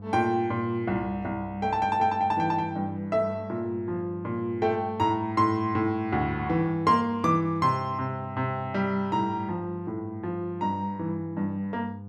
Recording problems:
hum; 50 Hz, harmonics up to 1 kHz, SNR 14 dB

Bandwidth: 13 kHz